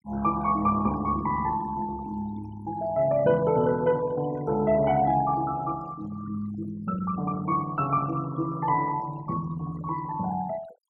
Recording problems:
noise reduction artefacts; signal-to-artefact ratio 18 dB

